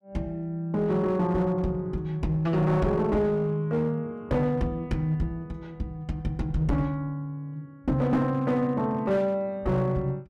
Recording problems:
distorted audio; hard clipping, uneven, signal-to-distortion ratio 11 dB

